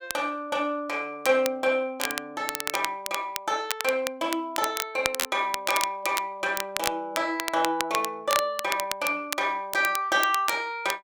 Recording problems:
crackling; vinyl, SNR 6 dB

